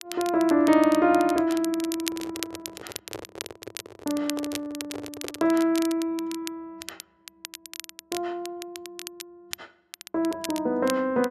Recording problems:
crackle; vinyl, SNR 13 dB
handling noise; from 2 to 5.5 s; peak -6 dB vs average level

